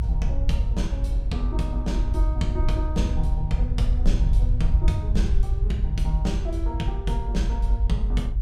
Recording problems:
hum; 60 Hz, harmonics up to 960 Hz, SNR 13 dB
low-frequency rumble; below 62 Hz, SNR -6 dB

